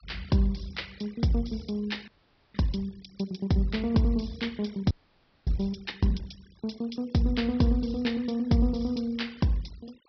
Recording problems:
treble cut off; nothing above 5.5 kHz
noise reduction artefacts; signal-to-artefact ratio 25 dB
audio freezing; at 2 s and at 5 s for 0.5 s

